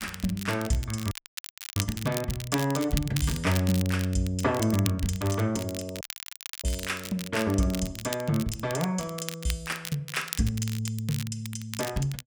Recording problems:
crackling; vinyl, SNR 9 dB
dropout; at 1 s for 0.5 s and at 6 s for 0.5 s

